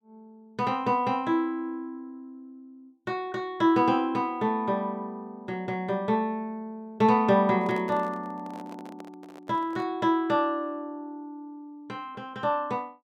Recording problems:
microphone handling noise; from 7.5 to 10 s; peak -11 dB vs average level

